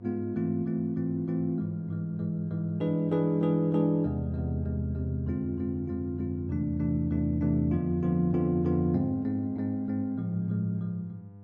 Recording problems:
mains hum; 50 Hz, harmonics up to 700 Hz, SNR 20 dB

